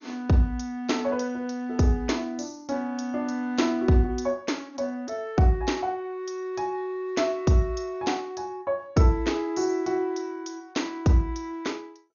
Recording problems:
codec artefacts; MP2, log-spectral distance 2 dB, nothing above 6.7 kHz

